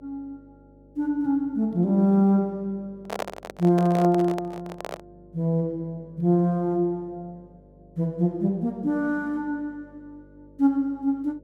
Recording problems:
mains hum; 50 Hz, harmonics up to 600 Hz, SNR 29 dB
handling noise; from 3 to 5 s; peak -3 dB vs average level

